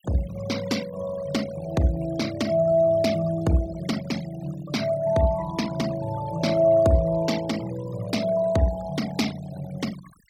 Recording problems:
noise reduction artefacts; signal-to-artefact ratio 16 dB

